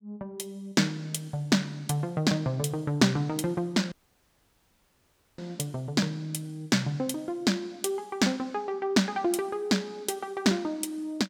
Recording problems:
audio cutting out; at 4 s for 1.5 s

